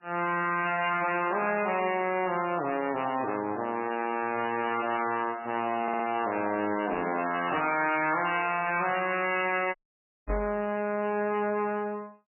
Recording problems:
lossy codec; MP3, then MP3, log-spectral distance 6 dB, nothing above 2.4 kHz
distorted audio; soft clipping, signal-to-distortion ratio 6 dB
stutter; at 6 s
dropout; at 10 s for 0.5 s
microphone thump; at 10 s; peak -3 dB vs average level

